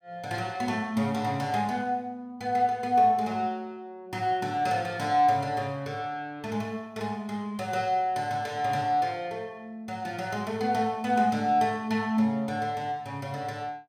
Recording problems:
none

